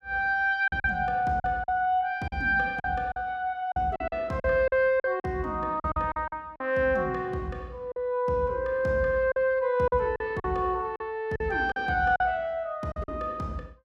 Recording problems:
packet loss; 9% of the sound replaced, filled with silence

